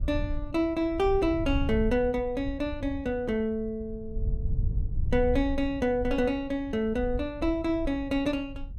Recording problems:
low-frequency rumble; below 82 Hz, SNR 8 dB

